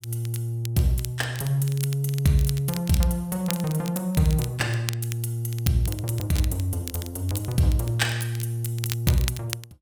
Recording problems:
crackle; vinyl, SNR 13 dB

